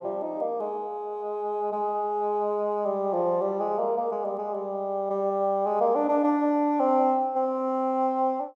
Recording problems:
none

